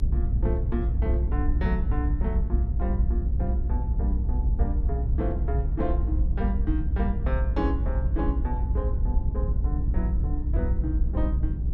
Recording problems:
rumble; below 64 Hz, SNR -7 dB

